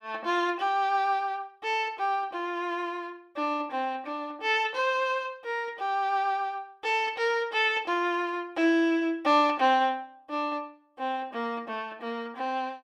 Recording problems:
none

